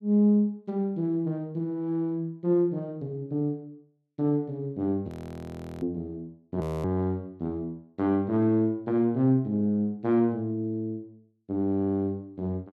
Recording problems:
audio freezing; at 5 s for 0.5 s and at 6.5 s

